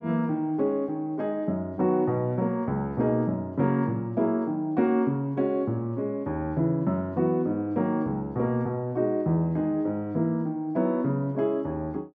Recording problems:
none

